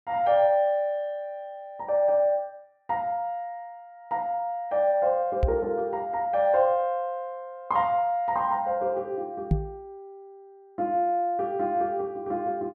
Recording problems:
knock on the microphone; at 5.5 s and at 9.5 s; peak +6 dB vs average level

